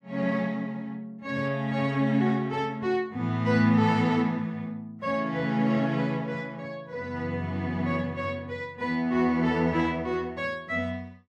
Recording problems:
none

